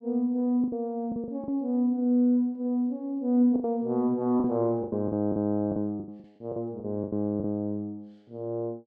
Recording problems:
packet loss; 10% of the sound replaced, filled with the last packet

